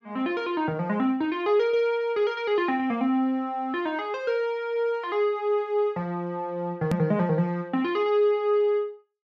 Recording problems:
hard cut with a click; at 7 s

